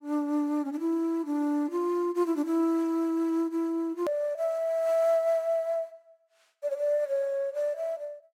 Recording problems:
edit click; at 4 s

